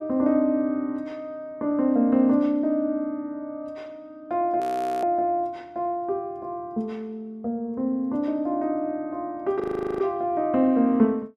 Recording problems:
audio freezing; at 4.5 s and at 9.5 s

